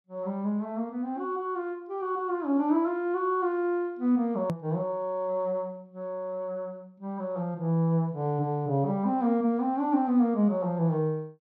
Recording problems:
edit click; at 4.5 s

